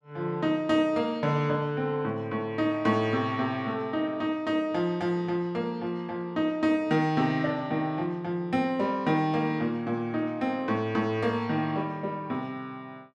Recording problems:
none

